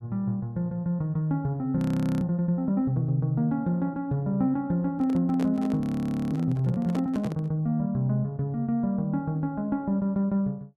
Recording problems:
frozen audio; at 2 s and at 6 s for 0.5 s
handling noise; from 5 to 7.5 s; peak -4 dB vs average level

